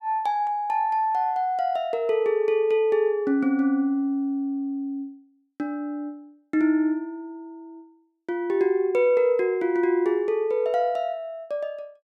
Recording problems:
none

